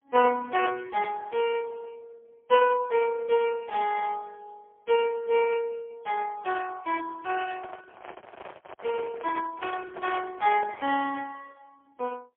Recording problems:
phone line; 300 Hz to 2.6 kHz, AMR-NB, then MP3
microphone handling noise; from 7.5 to 11 s; peak -9 dB vs average level

